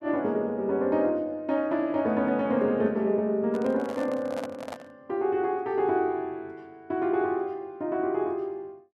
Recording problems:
handling noise; from 3.5 to 5 s; peak -5 dB vs average level

